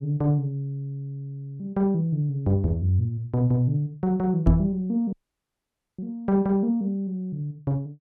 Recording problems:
microphone bump; at 4.5 s; peak +8 dB vs average level
audio cutting out; at 5 s for 1 s

